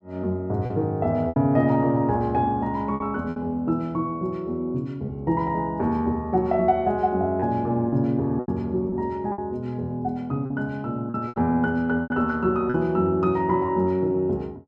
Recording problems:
packet loss; 5% of the sound replaced, filled with repeated pitch periods

